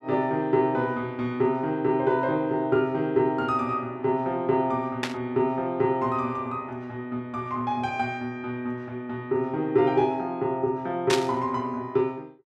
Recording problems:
static burst; at 5 s and at 11 s; peak +4 dB vs average level

